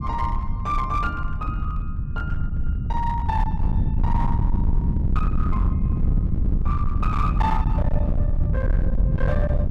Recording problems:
distorted audio; hard clipping, uneven, signal-to-distortion ratio 7 dB
rumble; below 110 Hz, SNR -5 dB

